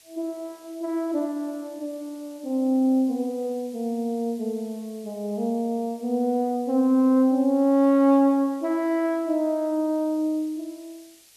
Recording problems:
hiss; SNR 28 dB

